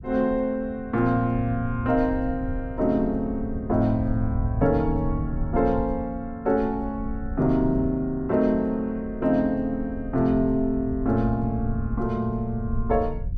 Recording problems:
rumble; below 92 Hz, SNR 10 dB

